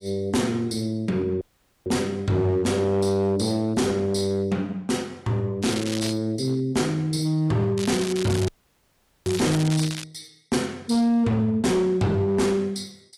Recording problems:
codec artefacts; AAC, log-spectral distance 3 dB, nothing above 12 kHz
distorted audio; hard clipping, signal-to-distortion ratio 11 dB
audio cutting out; at 1.5 s and at 8.5 s for 1 s
crackling; at 5.5 s and from 8 to 10 s; loose cable, SNR 10 dB

